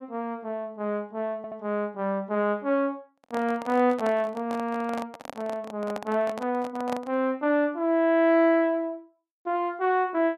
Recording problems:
stutter; at 1.5 s
handling noise; from 3 to 7 s; peak -4 dB vs average level

